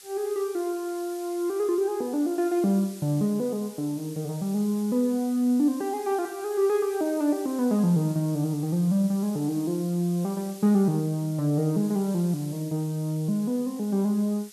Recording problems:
hiss; SNR 19 dB

